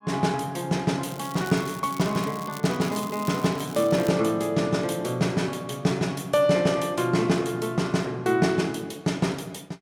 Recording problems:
crackle; from 1 to 4 s; loose cable, SNR 18 dB

